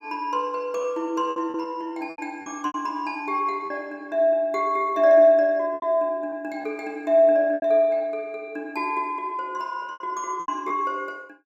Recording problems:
packet loss; 7% of the sound replaced, filled with repeated pitch periods

